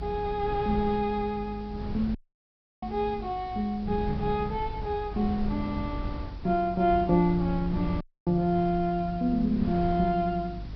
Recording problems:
treble missing; nothing above 5.5 kHz
hum; 50 Hz, harmonics up to 300 Hz, SNR 17 dB
background hiss; slope -2 dB per octave, SNR 27 dB
wind on the microphone; below 140 Hz, SNR 11 dB
audio cutting out; at 2 s for 0.5 s and at 8 s

